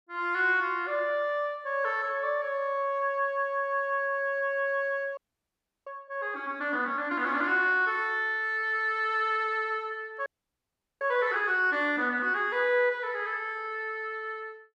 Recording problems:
frozen audio; at 5 s for 0.5 s and at 10 s for 1 s

